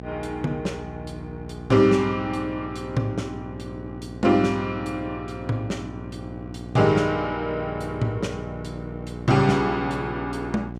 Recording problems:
hum; 60 Hz, harmonics up to 1.2 kHz, SNR 12 dB

